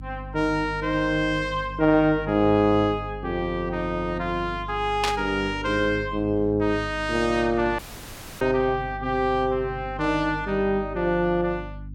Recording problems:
hum; 50 Hz, harmonics up to 300 Hz, SNR 14 dB
burst of static; at 5 s; peak +3 dB vs average level
dropout; at 8 s for 0.5 s

